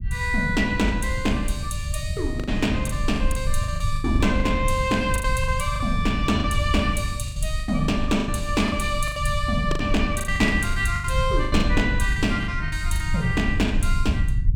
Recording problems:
low-frequency rumble; below 86 Hz, SNR 3 dB
lost packets; 13% of the sound replaced, filled with the last packet

